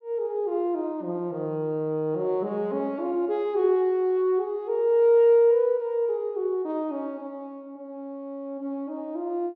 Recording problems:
none

